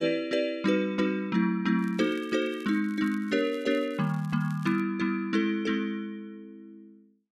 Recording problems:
crackling; from 2 to 5 s; loose cable, SNR 27 dB

